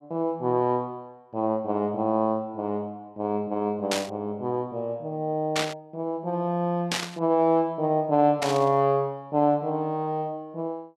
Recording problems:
static burst; 4 times, first at 4 s; peak +3 dB vs average level

